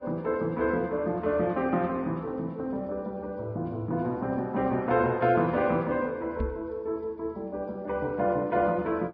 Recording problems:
codec artefacts; Vorbis, log-spectral distance 2 dB
microphone bump; at 6.5 s; peak +1 dB vs average level

